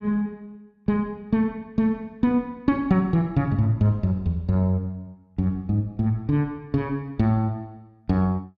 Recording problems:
none

